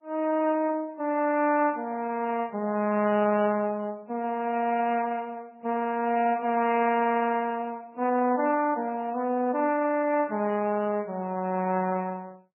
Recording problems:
lossy compression; Vorbis, then MP3, log-spectral distance 2 dB, nothing above 2.4 kHz

